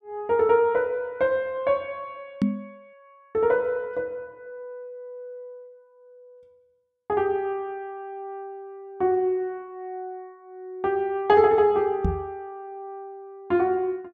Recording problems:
microphone thump; at 2.5 s and at 12 s; peak +5 dB vs average level

